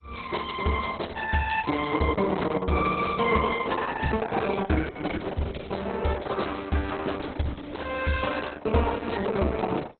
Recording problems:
lossy codec; Opus, then MP2, log-spectral distance 6 dB, nothing above 4 kHz

